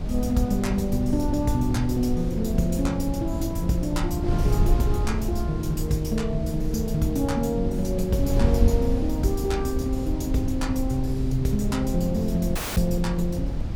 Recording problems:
wind on the microphone; below 110 Hz, SNR 2 dB
audio cutting out; at 13 s

